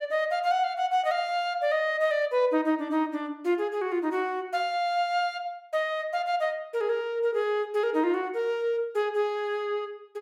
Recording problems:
none

